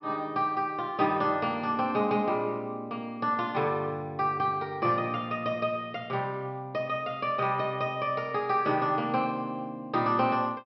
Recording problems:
low-pass filter; nothing above 5.5 kHz

